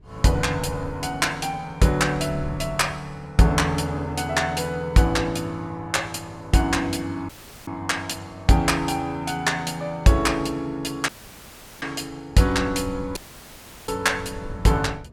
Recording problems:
wind noise; below 160 Hz, SNR 15 dB
dropout; at 7.5 s, at 11 s for 0.5 s and at 13 s for 0.5 s

